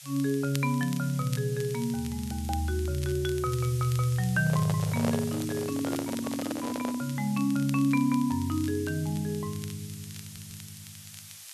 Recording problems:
hiss; slope +5 dB per octave, SNR 15 dB
crackling; vinyl, SNR 19 dB
microphone handling noise; from 4.5 to 7 s; peak +1 dB vs average level
audio stuttering; at 10 s

